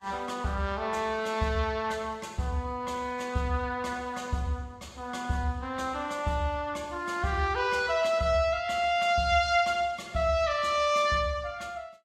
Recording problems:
codec artefacts; Vorbis, log-spectral distance 3 dB, nothing above 14.7 kHz

